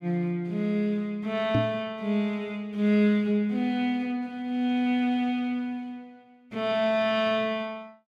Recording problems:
knock on the microphone; at 1.5 s; peak +4 dB vs average level

